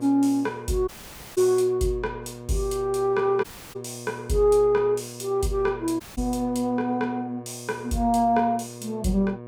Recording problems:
electrical hum; 60 Hz, harmonics up to 1.2 kHz, SNR 15 dB
dropout; at 1 s, at 3.5 s and at 6 s

